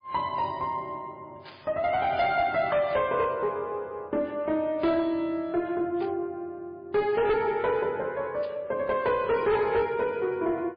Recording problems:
codec artefacts; MP3, log-spectral distance 2 dB, nothing above 4.4 kHz
distortion; soft clipping, signal-to-distortion ratio 11 dB
burst of static; 4 times, first at 1.5 s; peak -15 dB vs average level

